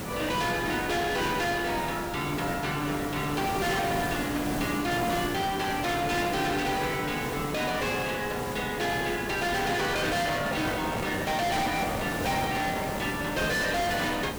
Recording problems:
distortion; hard clipping, signal-to-distortion ratio 6 dB
hiss; slope -6 dB per octave, SNR 6 dB
microphone handling noise; from 10 to 13 s; peak 0 dB vs average level

